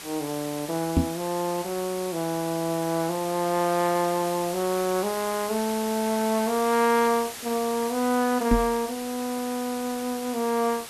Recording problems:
background hiss; slope -1 dB per octave, SNR 10 dB
knock on the microphone; at 1 s and at 8.5 s; peak +7 dB vs average level

